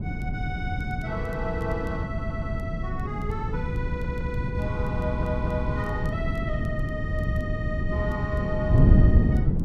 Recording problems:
wind on the microphone; below 170 Hz, SNR -6 dB
crackling; vinyl, SNR 30 dB
stutter; at 2 s, at 4 s and at 5 s

